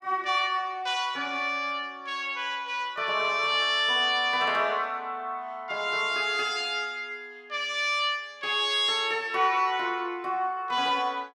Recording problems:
none

